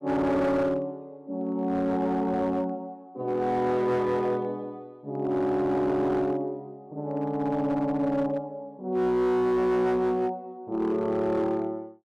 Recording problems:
distortion; hard clipping, signal-to-distortion ratio 11 dB

